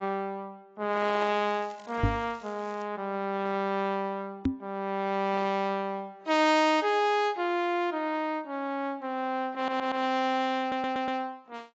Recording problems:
lossy compression; AAC, log-spectral distance 2 dB, nothing above 7.6 kHz
crackle; from 1 to 3 s; loose cable, SNR 26 dB
knock on the microphone; at 2 s and at 4.5 s; peak +6 dB vs average level
audio stuttering; at 9.5 s and at 11 s

